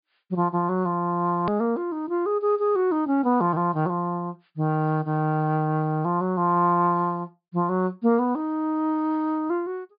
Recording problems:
treble cut off; nothing above 4.9 kHz
hard cut with a click; at 1.5 s

